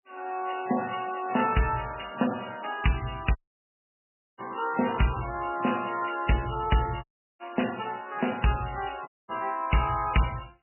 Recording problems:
lossy codec; MP3, log-spectral distance 12 dB, nothing above 2.9 kHz
dropout; at 3.5 s for 1 s, at 7 s and at 9 s

